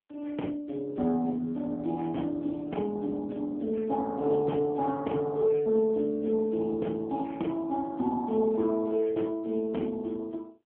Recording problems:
telephone audio; 190 Hz to 3.8 kHz, AMR-NB

